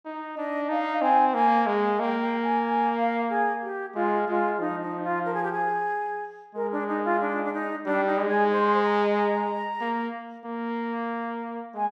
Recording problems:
none

